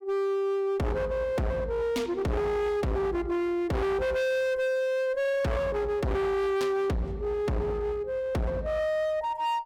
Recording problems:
distortion; hard clipping, uneven, signal-to-distortion ratio 5 dB

